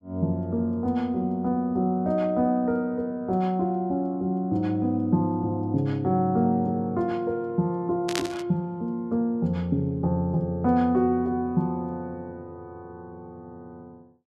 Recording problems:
burst of static; at 8 s; peak +1 dB vs average level

